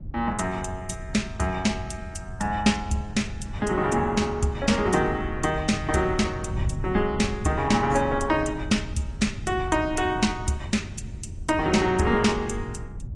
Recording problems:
codec artefacts; AAC, log-spectral distance 3 dB, nothing above 10.4 kHz
wind on the microphone; below 120 Hz, SNR 10 dB

